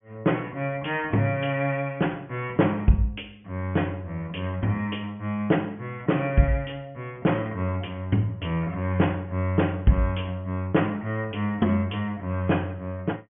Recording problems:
low-pass filter; nothing above 3.4 kHz

